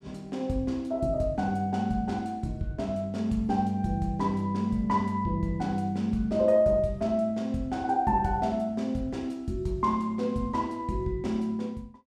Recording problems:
none

